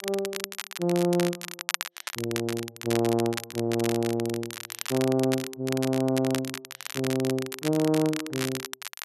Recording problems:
crackle; vinyl, SNR 8 dB

